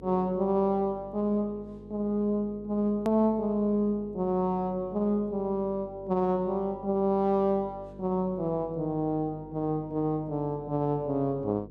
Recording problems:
hum; 50 Hz, harmonics up to 500 Hz, SNR 20 dB
edit click; at 3 s

